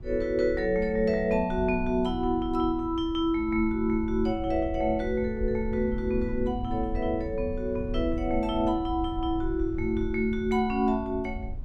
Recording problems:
rumble; below 80 Hz, SNR 11 dB

